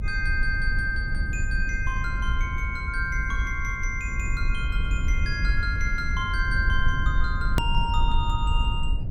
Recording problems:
rumble; below 70 Hz, SNR -1 dB
edit click; at 7.5 s

